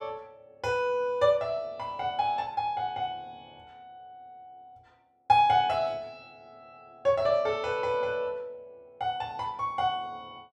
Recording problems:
none

